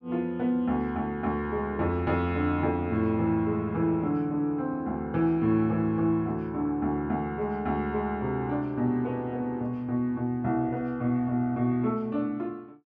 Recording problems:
none

